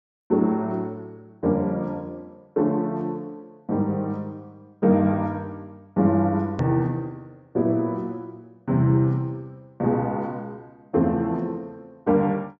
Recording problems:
low-pass filter; nothing above 8 kHz
click at an edit; at 6.5 s

